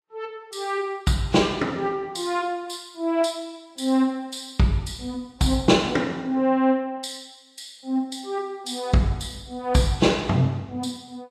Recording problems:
lossy codec; Vorbis, log-spectral distance 3 dB, nothing above 12 kHz

